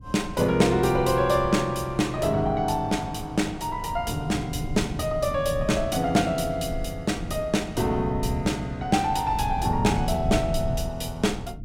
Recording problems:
low-frequency rumble; below 130 Hz, SNR 11 dB

